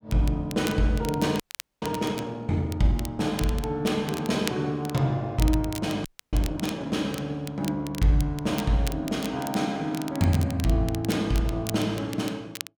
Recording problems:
crackle; vinyl, SNR 14 dB
audio freezing; at 1.5 s and at 6 s

